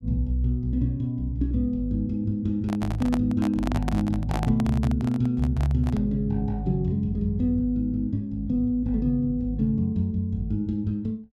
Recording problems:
microphone handling noise; from 2.5 to 6 s; peak -1 dB vs average level

